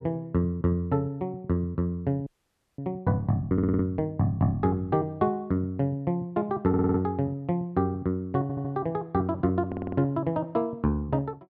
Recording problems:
frozen audio; at 2.5 s for 0.5 s
audio stuttering; 4 times, first at 3.5 s

